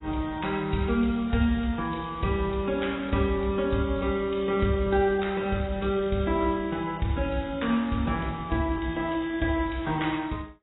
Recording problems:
lossy codec; AAC, log-spectral distance 5 dB, nothing above 3.8 kHz

